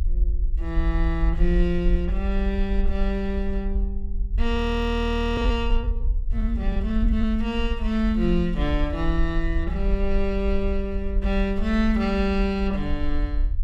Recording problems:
low-frequency rumble; below 52 Hz, SNR 2 dB
audio freezing; at 4.5 s for 1 s

